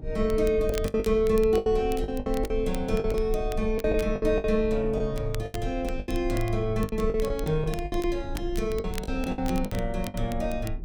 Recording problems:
low-frequency rumble; below 56 Hz, strongest tone 26 Hz, SNR 9 dB
crackle; vinyl, SNR 18 dB
lost packets; 13% of the sound replaced, filled with the last packet

